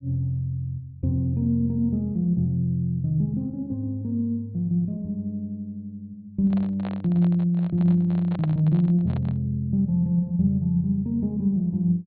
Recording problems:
treble missing; nothing above 4.5 kHz
handling noise; from 6.5 to 9.5 s; peak -8 dB vs average level

